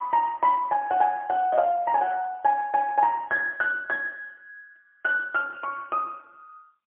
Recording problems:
phone line; 280 Hz to 2.8 kHz, AMR-NB, then MP3

